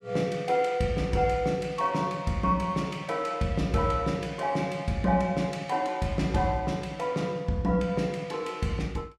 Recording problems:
none

